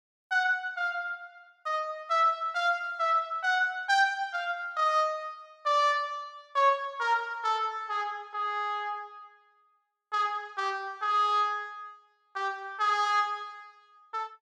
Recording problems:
none

